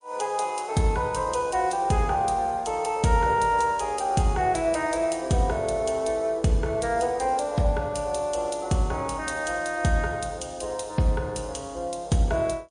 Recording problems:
lossy codec; MP3, log-spectral distance 3 dB

